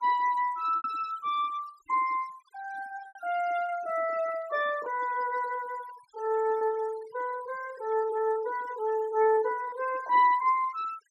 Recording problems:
noise reduction artefacts; signal-to-artefact ratio 19 dB
lost packets; 3% of the sound replaced, filled with repeated pitch periods

